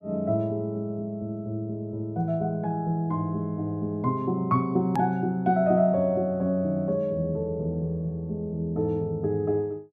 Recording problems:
hard cut with a click; at 5 s

